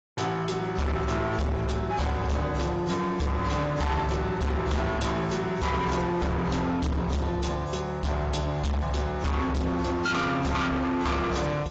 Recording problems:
codec artefacts; AAC, log-spectral distance 3 dB, nothing above 7.3 kHz
distorted audio; hard clipping, signal-to-distortion ratio 6 dB

